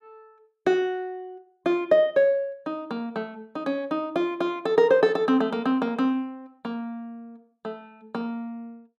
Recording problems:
none

